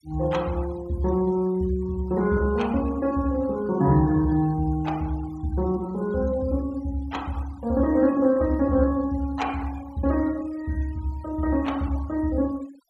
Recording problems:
noise reduction artefacts; signal-to-artefact ratio 23 dB

